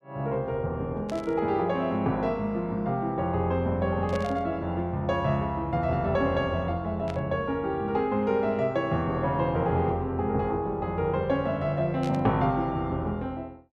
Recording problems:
burst of static; 4 times, first at 1 s; peak -10 dB vs average level

